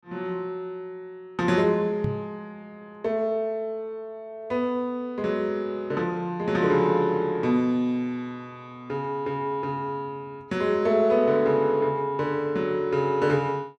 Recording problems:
microphone thump; at 2 s; peak 0 dB vs average level

